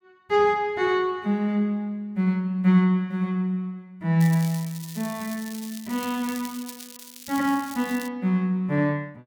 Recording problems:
crackling; from 4 to 8 s; loose cable, SNR 15 dB

